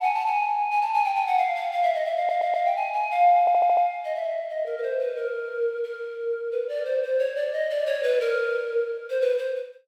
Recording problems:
audio stuttering; at 2 s and at 3.5 s

